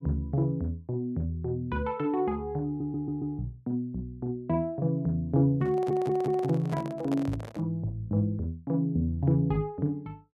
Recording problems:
stutter; at 2.5 s and at 5.5 s
microphone handling noise; from 5.5 to 7.5 s; peak -5 dB vs average level

